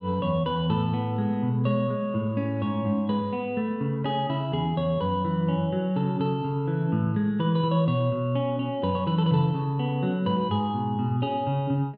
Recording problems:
treble cut off; nothing above 6 kHz

